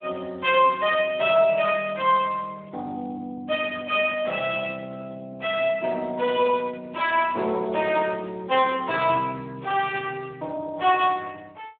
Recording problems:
phone line; 300 Hz to 3.5 kHz, Speex

